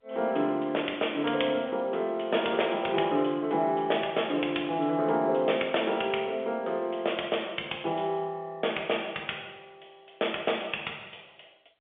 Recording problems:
phone line; 300 Hz to 3.5 kHz, G.711

